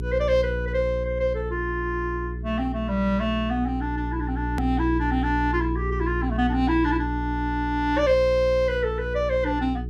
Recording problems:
mains hum; 60 Hz, harmonics up to 420 Hz, SNR 6 dB
click at an edit; at 4.5 s

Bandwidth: 13 kHz